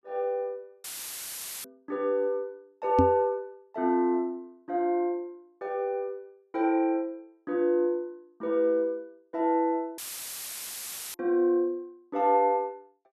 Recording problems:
audio cutting out; at 1 s for 1 s and at 10 s for 1 s; filled with static
microphone thump; at 3 s; peak +7 dB vs average level

